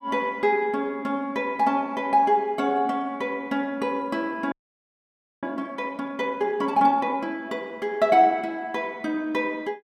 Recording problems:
frozen audio; at 4.5 s for 1 s

